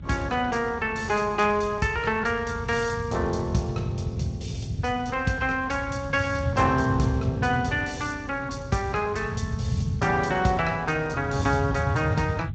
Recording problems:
lossy compression; Speex, log-spectral distance 3 dB, nothing above 7.6 kHz
rumble; below 150 Hz, SNR 6 dB

